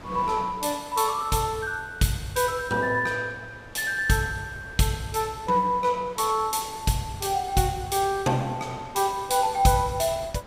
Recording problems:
wind noise; below 1.2 kHz, SNR 21 dB

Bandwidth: 15.5 kHz